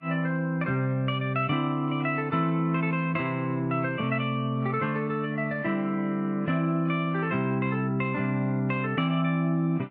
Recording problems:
lossy compression; Vorbis, log-spectral distance 2 dB

